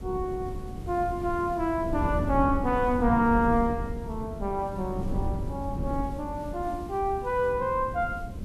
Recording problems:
hiss; slope -1 dB per octave, SNR 28 dB
wind on the microphone; below 190 Hz, SNR 7 dB

